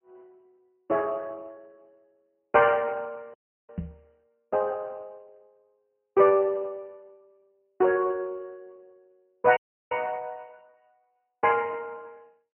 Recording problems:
treble cut off; nothing above 3 kHz
lossy codec; Speex, log-spectral distance 3 dB
audio cutting out; at 3.5 s and at 9.5 s
knock on the microphone; at 4 s; peak -4 dB vs average level

